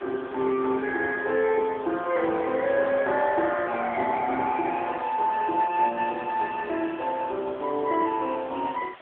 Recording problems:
phone line; 260 Hz to 2.6 kHz, AMR-NB
hiss; SNR 21 dB

